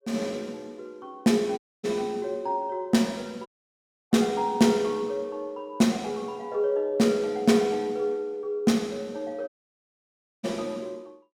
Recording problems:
audio cutting out; at 1.5 s, at 3.5 s for 0.5 s and at 9.5 s for 1 s

